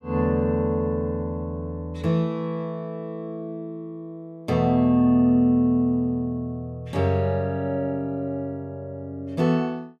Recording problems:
none

